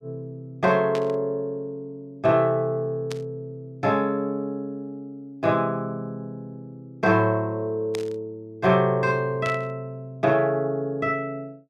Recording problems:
burst of static; 4 times, first at 1 s; peak -6 dB vs average level

